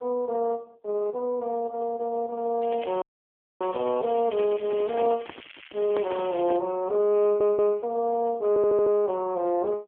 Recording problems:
telephone audio; 260 Hz to 2.3 kHz, AMR-NB
crackle; from 2.5 to 6.5 s; loose cable, SNR 19 dB
audio cutting out; at 3 s for 0.5 s
handling noise; from 4.5 to 6.5 s; peak -8 dB vs average level
audio stuttering; at 7 s and at 8.5 s

